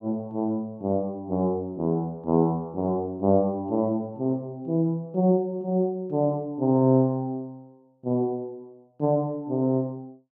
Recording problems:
none

